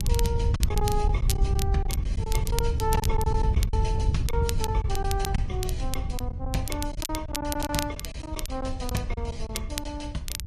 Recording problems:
codec artefacts; AAC, then MP3, log-spectral distance 2 dB, nothing above 11 kHz
wind noise; below 92 Hz, SNR -3 dB
crackling; vinyl, SNR 4 dB
packet loss; 9% of the sound replaced, filled with silence

